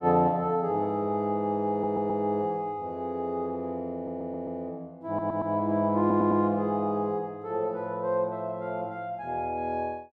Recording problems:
stutter; 4 times, first at 1.5 s

